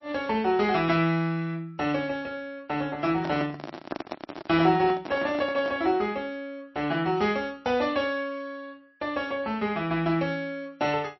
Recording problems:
codec artefacts; MP3, log-spectral distance 2 dB, nothing above 5.2 kHz
handling noise; from 3 to 6 s; peak -1 dB vs average level

